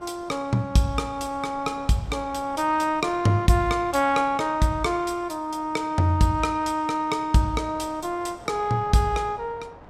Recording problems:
wind on the microphone; below 940 Hz, SNR 23 dB

